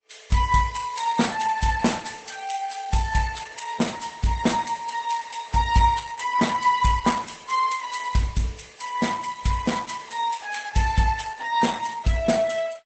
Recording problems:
lossy compression; Vorbis, then Opus, log-spectral distance 5 dB, nothing above 8.2 kHz

